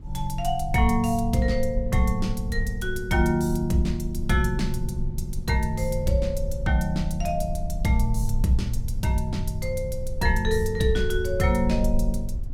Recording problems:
low-frequency rumble; below 56 Hz, SNR 7 dB

